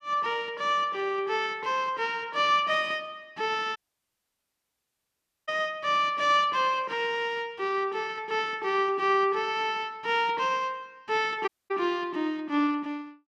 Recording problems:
audio cutting out; at 4 s for 1.5 s and at 11 s

